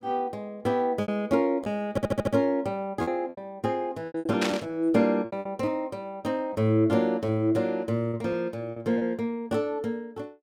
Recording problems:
lost packets; 8% of the sound replaced, filled with repeated pitch periods
audio stuttering; at 2 s
static burst; at 4.5 s; peak +3 dB vs average level

